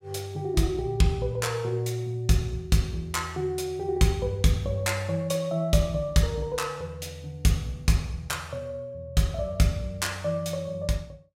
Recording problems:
none

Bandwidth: 16 kHz